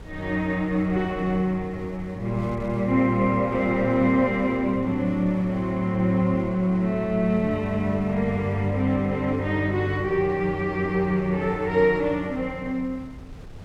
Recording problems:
wind on the microphone; below 190 Hz, SNR 18 dB

